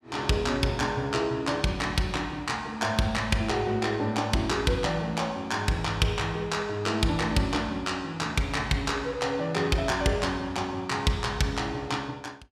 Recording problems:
none

